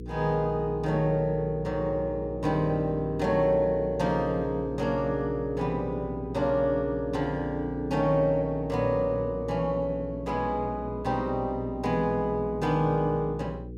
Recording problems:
electrical hum; 60 Hz, harmonics up to 480 Hz, SNR 12 dB

